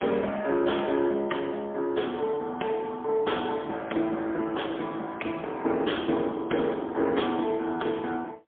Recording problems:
phone line; 220 Hz to 3.4 kHz, AMR-NB, then MP3

